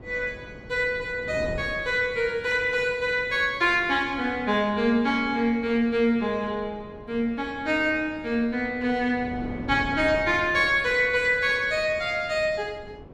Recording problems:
wind on the microphone; below 410 Hz, SNR 18 dB

